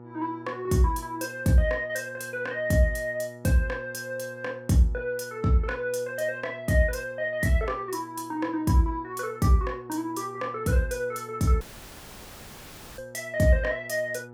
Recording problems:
electrical hum; 60 Hz, harmonics up to 1.4 kHz, SNR 20 dB
dropout; at 12 s for 1.5 s

